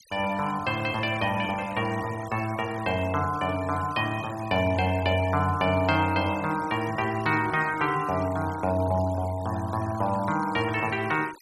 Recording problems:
noise reduction artefacts; signal-to-artefact ratio 18 dB

